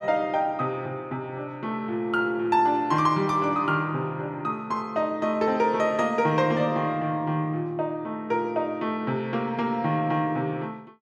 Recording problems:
none

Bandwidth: 12.5 kHz